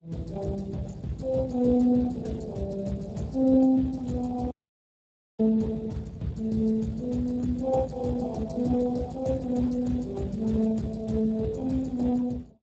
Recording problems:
lossy compression; Opus, then Speex, log-spectral distance 2 dB
dropout; at 4.5 s for 1 s

